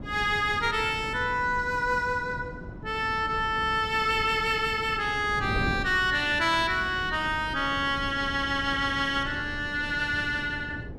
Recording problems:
wind on the microphone; below 290 Hz, SNR 13 dB

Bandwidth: 14 kHz